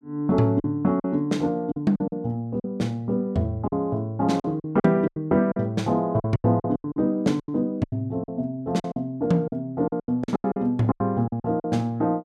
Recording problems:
packet loss; 13% of the sound replaced, filled with silence

